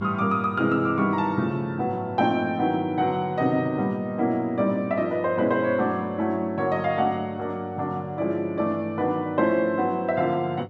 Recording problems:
hum; 50 Hz, harmonics up to 900 Hz, SNR 20 dB

